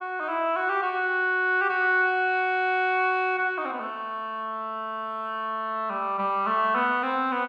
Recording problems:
none

